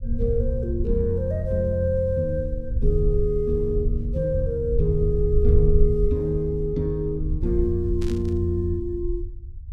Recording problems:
rumble; below 68 Hz, SNR 4 dB
static burst; at 8 s; peak -12 dB vs average level

